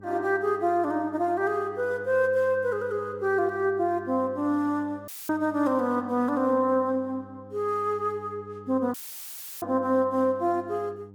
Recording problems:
hum; 50 Hz, harmonics up to 800 Hz, SNR 21 dB
dropout; at 5 s and at 9 s for 0.5 s; filled with static

